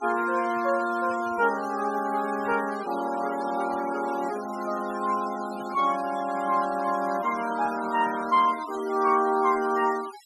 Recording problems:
denoising artefacts; signal-to-artefact ratio 15 dB

